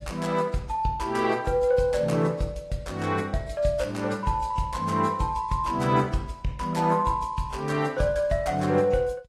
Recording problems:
lossy codec; AAC, log-spectral distance 2 dB

